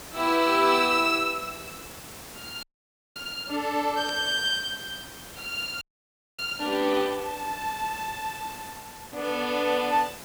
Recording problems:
hiss; slope -3 dB per octave, SNR 16 dB
frozen audio; at 2.5 s for 0.5 s and at 6 s for 0.5 s
static burst; at 4 s; peak -10 dB vs average level

